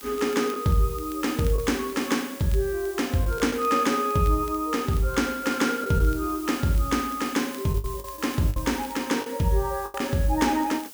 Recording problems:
background hiss; SNR 15 dB
crackling; vinyl, SNR 26 dB
packet loss; 4% of the sound replaced, filled with the last packet

